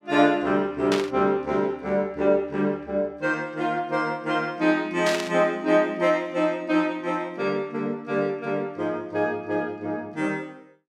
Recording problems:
static burst; at 1 s and at 5 s; peak 0 dB vs average level

